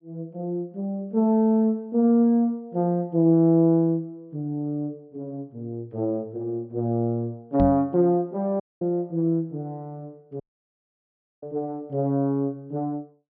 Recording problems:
treble cut off; nothing above 5.5 kHz
microphone thump; at 7.5 s; peak +2 dB vs average level
audio cutting out; at 8.5 s and at 10 s for 1 s

